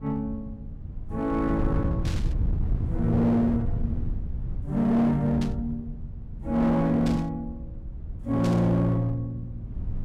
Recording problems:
distorted audio; hard clipping, uneven, signal-to-distortion ratio 10 dB
low-frequency rumble; below 120 Hz, SNR 8 dB
static burst; 4 times, first at 2 s; peak -10 dB vs average level

